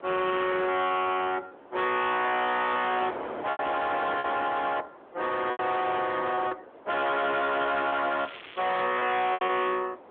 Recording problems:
phone line; 260 Hz to 3.7 kHz, AMR-NB
distortion; hard clipping, uneven, signal-to-distortion ratio 6 dB
wind noise; below 1.1 kHz, SNR 18 dB
lost packets; 6% of the sound replaced, filled with repeated pitch periods
crackling; from 8 to 9 s; loose cable, SNR 17 dB

